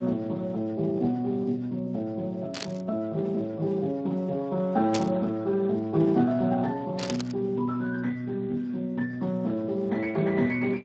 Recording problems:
codec artefacts; Speex, log-spectral distance 2 dB
static burst; at 2.5 s, at 5 s and at 7 s; peak +1 dB vs average level

